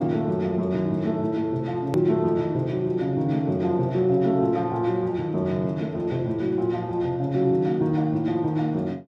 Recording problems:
click at an edit; at 2 s

